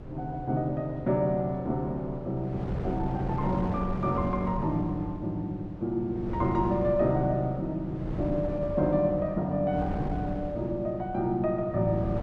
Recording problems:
wind noise; below 340 Hz, SNR 9 dB

